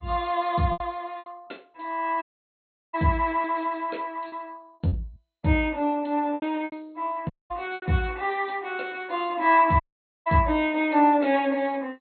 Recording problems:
lossy codec; MP2, log-spectral distance 3 dB, nothing above 4.2 kHz
packet loss; 5% of the sound replaced, filled with repeated pitch periods
audio cutting out; at 2 s for 0.5 s, at 7.5 s and at 10 s

